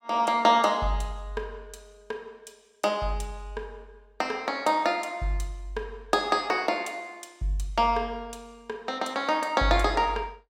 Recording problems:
none

